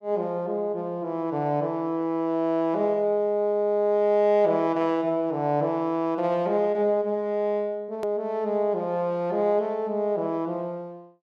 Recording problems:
click at an edit; at 8 s

